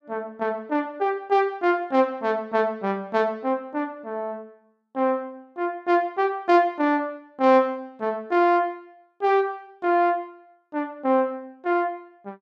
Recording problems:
none

